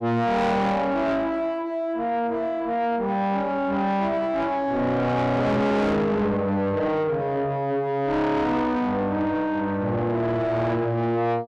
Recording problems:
distorted audio; soft clipping, signal-to-distortion ratio 7 dB

